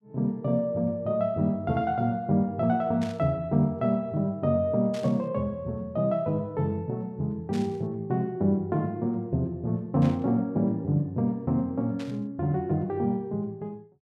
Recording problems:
burst of static; 5 times, first at 3 s; peak -11 dB vs average level

